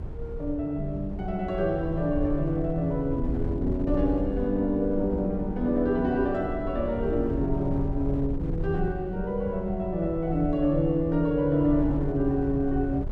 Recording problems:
wind on the microphone; below 100 Hz, SNR 8 dB

